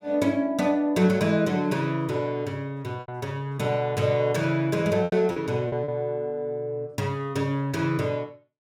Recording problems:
packet loss; 3% of the sound replaced, filled with repeated pitch periods

